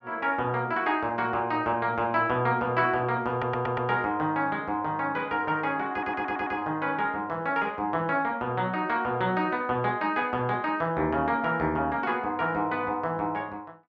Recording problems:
audio stuttering; at 3.5 s and at 6 s

